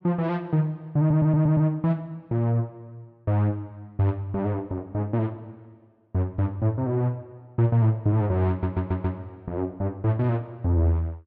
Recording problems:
audio stuttering; at 1 s and at 8.5 s

